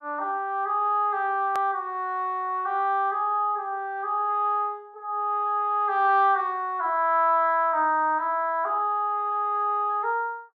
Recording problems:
edit click; at 1.5 s

